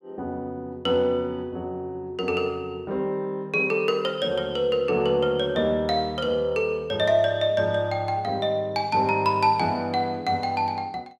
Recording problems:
none

